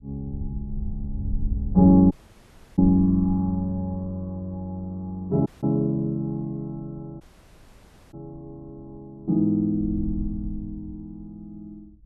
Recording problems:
wind noise; below 82 Hz, SNR 11 dB
audio cutting out; at 2 s for 0.5 s, at 5.5 s and at 7 s for 1 s

